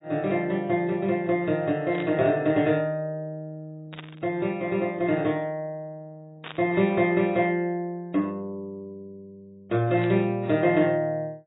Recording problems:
lossy compression; AAC, log-spectral distance 2 dB, nothing above 3.6 kHz
static burst; 4 times, first at 2 s; peak -9 dB vs average level

